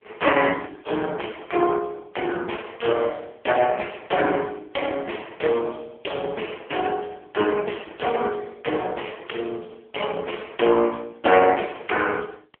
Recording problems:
phone line; 320 Hz to 3.2 kHz, AMR-NB

